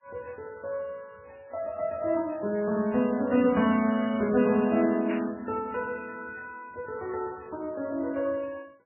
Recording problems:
lossy codec; Vorbis, then MP3, log-spectral distance 3 dB, nothing above 2.5 kHz
burst of static; at 5 s; peak -7 dB vs average level

